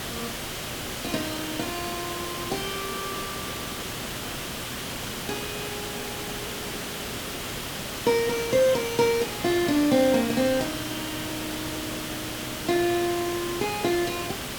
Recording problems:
hum; 60 Hz, harmonics up to 1.2 kHz, SNR 19 dB
hiss; slope -2 dB per octave, SNR 5 dB

